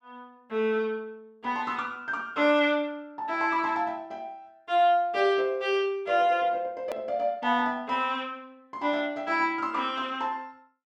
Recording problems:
click at an edit; at 7 s

